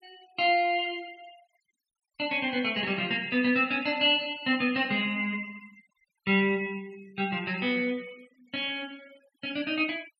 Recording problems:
denoising artefacts; signal-to-artefact ratio 26 dB

